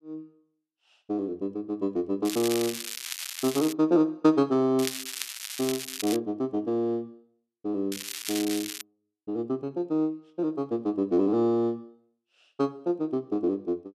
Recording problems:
crackle; from 2 to 3.5 s, from 5 to 6 s and at 8 s; loose cable, SNR 7 dB

